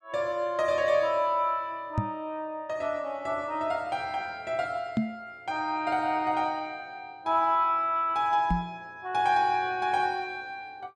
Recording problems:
knock on the microphone; at 2 s, at 5 s and at 8.5 s; peak +5 dB vs average level

